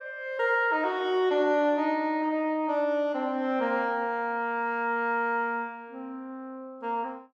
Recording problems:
none

